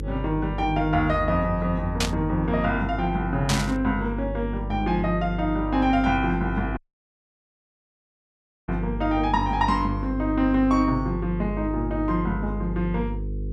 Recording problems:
electrical hum; 50 Hz, harmonics up to 500 Hz, SNR 7 dB
static burst; at 2 s and at 3.5 s; peak +4 dB vs average level
dropout; at 7 s for 2 s

